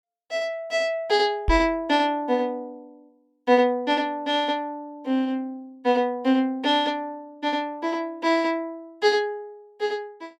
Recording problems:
knock on the microphone; at 1.5 s; peak +3 dB vs average level

